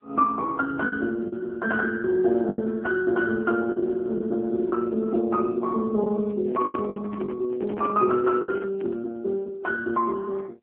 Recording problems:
telephone audio; 220 Hz to 3 kHz, AMR-NB
lost packets; 5% of the sound replaced, filled with the last packet
microphone handling noise; from 6.5 to 9 s; peak -4 dB vs average level

